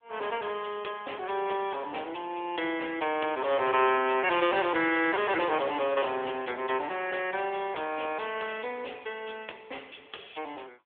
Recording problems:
phone line; 300 Hz to 3.4 kHz, AMR-NB
crackle; at 5 s; loose cable, SNR 27 dB

